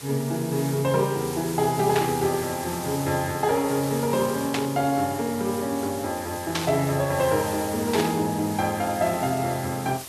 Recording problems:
background hiss; slope -1 dB per octave, SNR 11 dB
static burst; 4 times, first at 2 s; peak +2 dB vs average level

